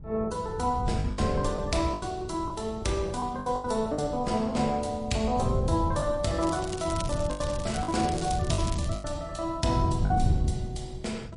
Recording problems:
lossy codec; MP3, log-spectral distance 3 dB, nothing above 10.4 kHz
wind on the microphone; below 140 Hz, SNR 5 dB
packet loss; 6% of the sound replaced, filled with the last packet
crackle; from 6.5 to 9 s; loose cable, SNR 12 dB

